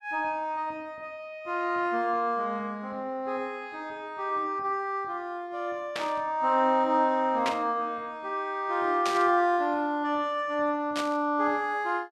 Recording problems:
static burst; 4 times, first at 6 s; peak 0 dB vs average level

